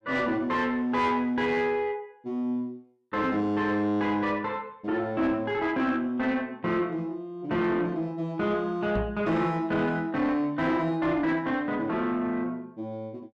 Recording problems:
distortion; soft clipping, signal-to-distortion ratio 12 dB
knock on the microphone; at 9 s; peak +3 dB vs average level

